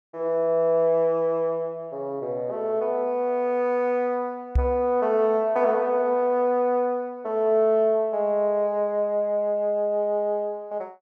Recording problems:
knock on the microphone; at 4.5 s; peak +5 dB vs average level

